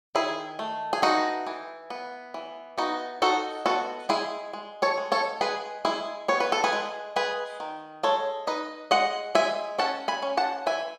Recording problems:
none

